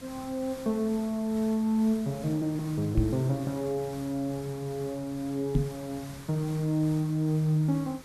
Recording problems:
hiss; slope -2 dB per octave, SNR 17 dB
microphone bump; at 3 s and at 5.5 s; peak +7 dB vs average level

